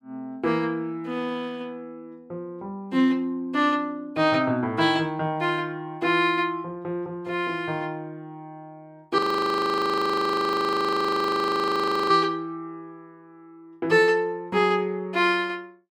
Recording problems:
frozen audio; at 9 s for 3 s

